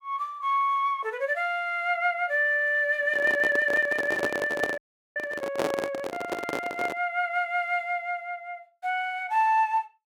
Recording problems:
handling noise; from 3 to 7 s; peak +2 dB vs average level
audio freezing; at 5 s

